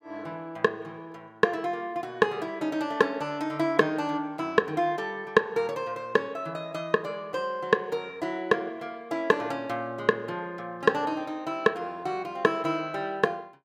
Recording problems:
none

